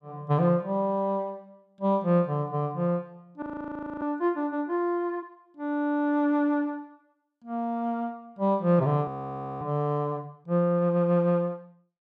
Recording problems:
frozen audio; at 3.5 s for 0.5 s and at 9 s for 0.5 s

